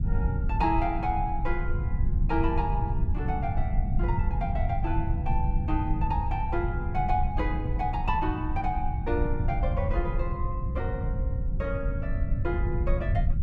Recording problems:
rumble; below 98 Hz, SNR -2 dB

